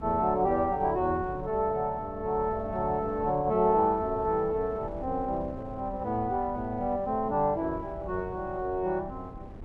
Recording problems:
wind noise; below 220 Hz, SNR 15 dB

